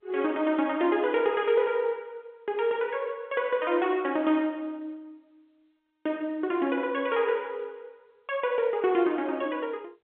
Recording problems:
phone line; 190 Hz to 3.5 kHz, G.711

